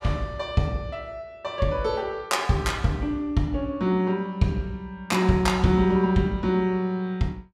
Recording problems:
none

